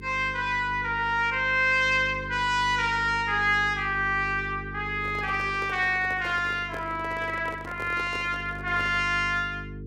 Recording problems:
electrical hum; 50 Hz, harmonics up to 450 Hz, SNR 15 dB
microphone handling noise; from 5 to 9 s; peak -10 dB vs average level

